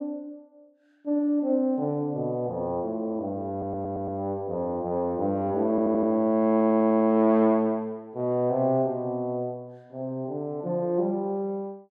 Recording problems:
audio stuttering; at 3.5 s, at 5.5 s and at 6.5 s

